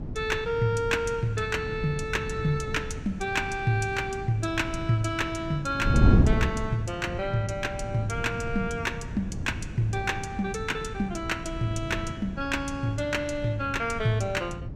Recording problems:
wind on the microphone; below 190 Hz, SNR 4 dB

